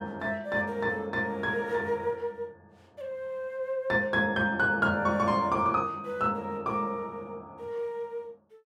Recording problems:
none

